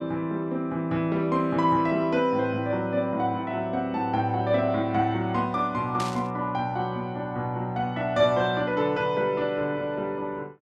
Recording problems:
static burst; at 6 s; peak -5 dB vs average level

